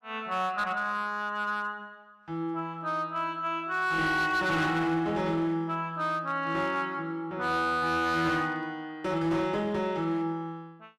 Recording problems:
distortion; hard clipping, uneven, signal-to-distortion ratio 12 dB

